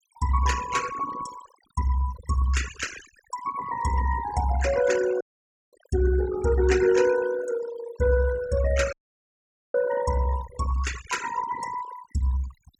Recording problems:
noise reduction artefacts; signal-to-artefact ratio 11 dB
dropout; at 5 s for 0.5 s and at 9 s for 1 s

